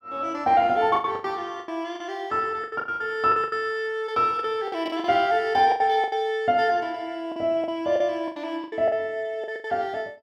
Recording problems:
packet loss; 13% of the sound replaced, filled with the last packet

